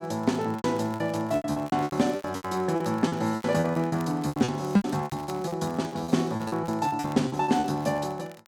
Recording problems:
crackle; vinyl, SNR 24 dB
lost packets; 19% of the sound replaced, filled with repeated pitch periods

